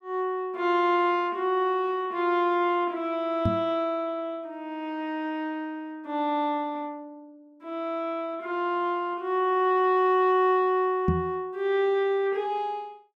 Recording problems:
knock on the microphone; at 3.5 s and at 11 s; peak +5 dB vs average level

